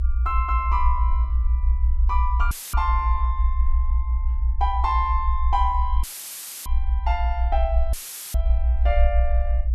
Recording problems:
rumble; below 62 Hz, SNR -4 dB
dropout; at 2.5 s, at 6 s for 0.5 s and at 8 s; filled with static

